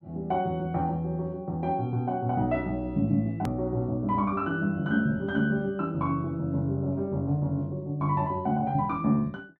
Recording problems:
click at an edit; at 3.5 s

